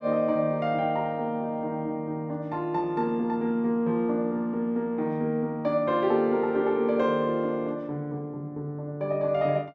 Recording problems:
none

